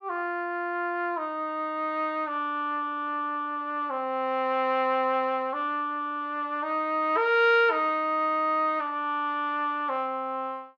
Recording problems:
none

